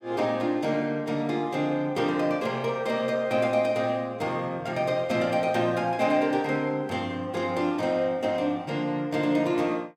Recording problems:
none

